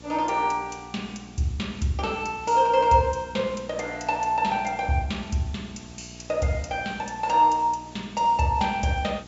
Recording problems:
low-pass filter; nothing above 8 kHz
electrical hum; 60 Hz, harmonics up to 1.3 kHz, SNR 21 dB
hiss; slope -2 dB per octave, SNR 25 dB

